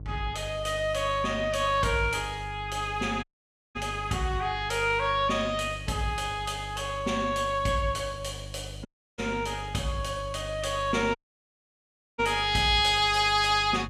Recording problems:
electrical hum; 50 Hz, harmonics up to 450 Hz, SNR 14 dB
audio cutting out; at 3 s for 0.5 s, at 9 s and at 11 s for 1 s

